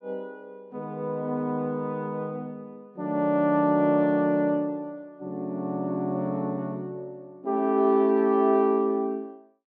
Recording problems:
none

